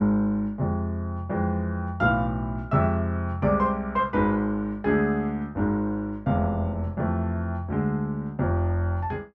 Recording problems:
none

